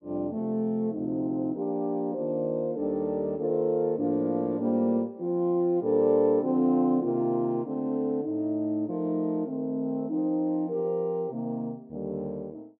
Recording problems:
none

